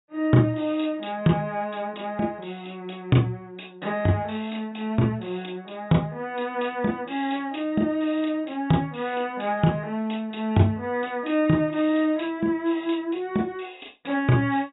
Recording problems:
treble missing; nothing above 4 kHz

